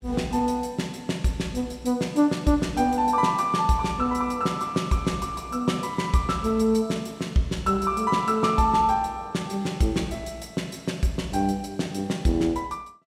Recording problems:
none

